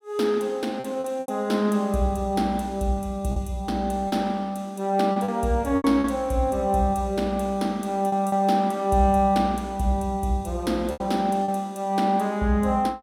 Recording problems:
packet loss; 5% of the sound replaced, filled with repeated pitch periods

